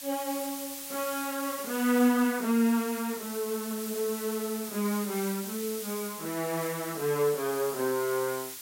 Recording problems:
background hiss; slope +3 dB per octave, SNR 8 dB

